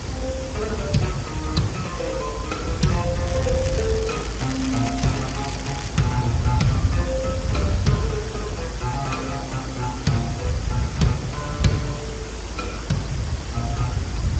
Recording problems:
lossy codec; Speex, log-spectral distance 5 dB, nothing above 7.6 kHz
hiss; slope -4 dB per octave, SNR 8 dB
rumble; below 120 Hz, SNR 3 dB
crackling; from 3.5 to 6 s; loose cable, SNR 9 dB

